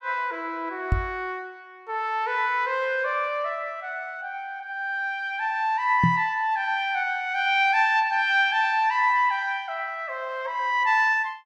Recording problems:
knock on the microphone; at 1 s and at 6 s; peak +6 dB vs average level

